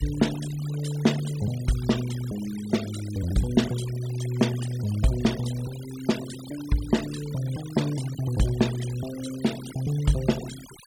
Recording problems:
noise reduction artefacts; signal-to-artefact ratio 14 dB

